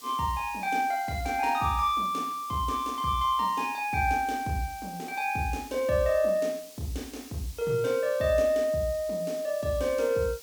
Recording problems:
background hiss; SNR 18 dB

